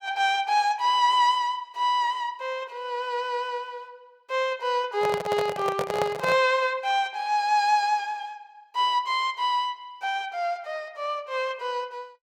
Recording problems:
handling noise; from 5 to 6.5 s; peak +1 dB vs average level

